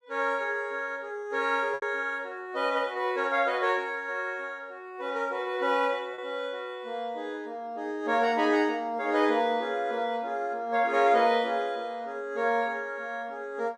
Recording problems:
lost packets; 0.9% of the sound replaced, filled with repeated pitch periods

